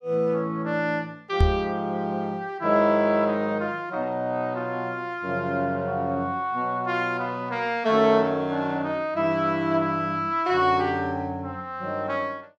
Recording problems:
knock on the microphone; at 1.5 s; peak +7 dB vs average level

